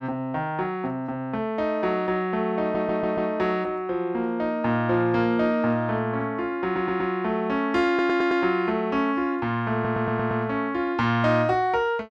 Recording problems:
stutter; 4 times, first at 2.5 s

